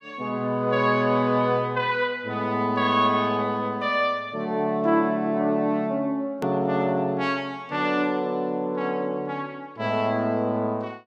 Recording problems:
click at an edit; at 6.5 s

